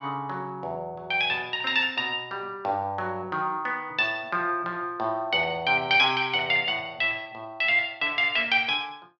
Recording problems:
none

